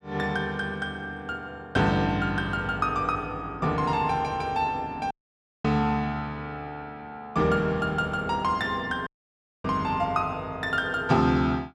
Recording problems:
dropout; at 5 s for 0.5 s and at 9 s for 0.5 s

